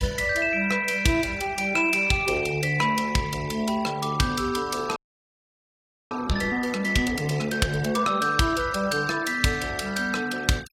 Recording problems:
denoising artefacts; signal-to-artefact ratio 21 dB
audio freezing; at 5 s for 1 s

